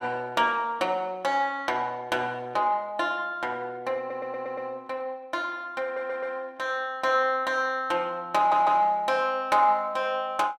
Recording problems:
audio stuttering; at 4 s, at 6 s and at 8.5 s

